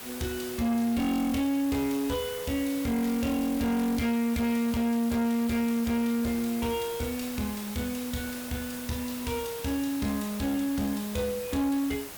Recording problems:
distorted audio; hard clipping, uneven, signal-to-distortion ratio 10 dB
hiss; slope -2 dB per octave, SNR 11 dB

